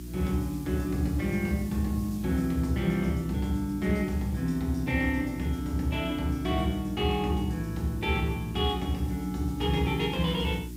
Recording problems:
hum; 60 Hz, harmonics up to 360 Hz, SNR 11 dB
background hiss; slope +2 dB per octave, SNR 22 dB

